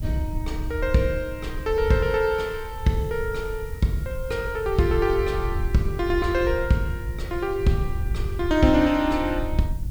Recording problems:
hiss; slope +1 dB per octave, SNR 25 dB
wind noise; below 80 Hz, SNR 8 dB

